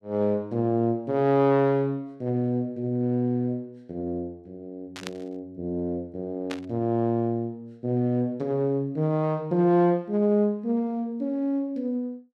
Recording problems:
static burst; at 5 s and at 6.5 s; peak -5 dB vs average level

